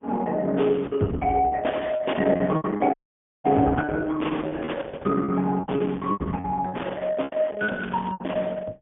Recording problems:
low-pass filter; nothing above 3.5 kHz
lossy codec; Opus, log-spectral distance 4 dB
packet loss; 13% of the sound replaced, filled with repeated pitch periods
audio cutting out; at 3 s for 0.5 s
crackle; at 7.5 s; loose cable, SNR 20 dB

